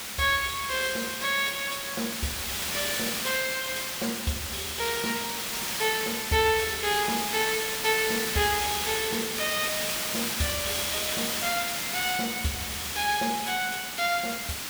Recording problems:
hiss; slope 0 dB per octave, SNR 1 dB

